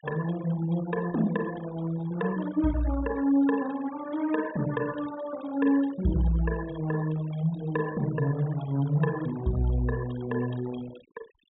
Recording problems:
treble cut off; nothing above 4 kHz
noise reduction artefacts; signal-to-artefact ratio 16 dB

